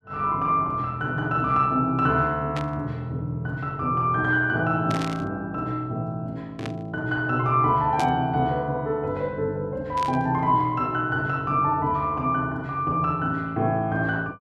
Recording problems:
burst of static; 5 times, first at 2.5 s; peak -6 dB vs average level

